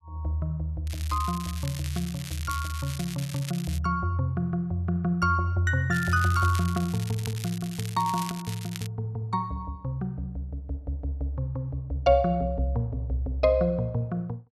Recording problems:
crackling; from 1 to 4 s and from 6 to 9 s; loose cable, SNR 12 dB

